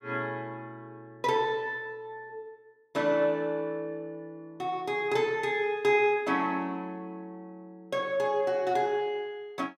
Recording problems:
none

